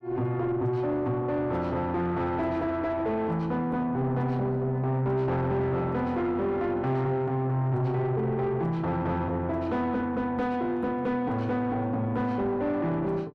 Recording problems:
distorted audio; soft clipping, signal-to-distortion ratio 11 dB

